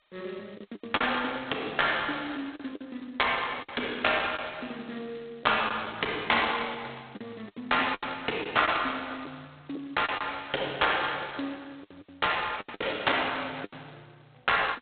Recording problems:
telephone audio; 320 Hz to 3.9 kHz, G.726
lost packets; 8% of the sound replaced, filled with the last packet

